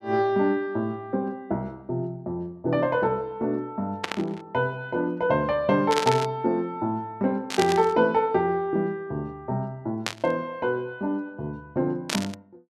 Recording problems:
burst of static; 5 times, first at 4 s; peak +3 dB vs average level

